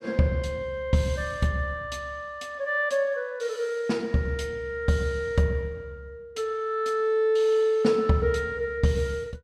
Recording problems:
none

